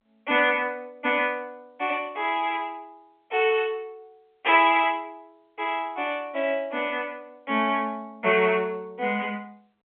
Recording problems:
phone line; 260 Hz to 3.4 kHz, G.711

